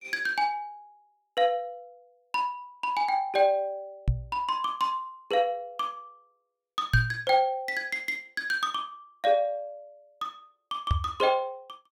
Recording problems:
knock on the microphone; at 4 s, at 7 s and at 11 s; peak +8 dB vs average level

